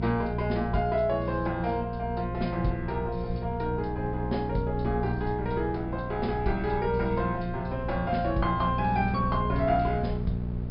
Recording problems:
treble cut off; nothing above 5.5 kHz
hum; 60 Hz, harmonics up to 660 Hz, SNR 4 dB
rumble; below 110 Hz, SNR 13 dB

